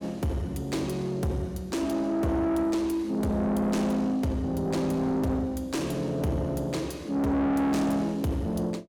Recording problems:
distorted audio; soft clipping, signal-to-distortion ratio 8 dB

